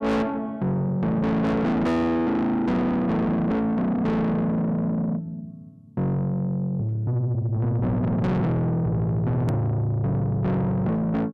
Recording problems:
distorted audio; soft clipping, signal-to-distortion ratio 6 dB
hard cut with a click; at 9.5 s

